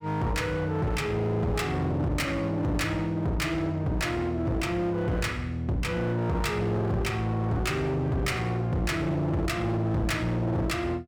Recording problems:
distorted audio; hard clipping, uneven, signal-to-distortion ratio 6 dB

